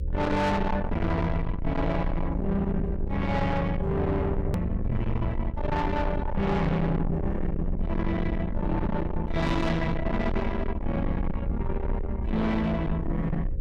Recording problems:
distorted audio; soft clipping, signal-to-distortion ratio 7 dB
hum; 60 Hz, harmonics up to 540 Hz, SNR 21 dB
rumble; below 170 Hz, SNR 4 dB
edit click; at 4.5 s

